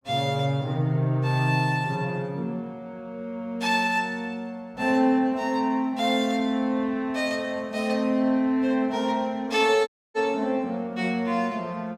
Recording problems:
dropout; at 10 s

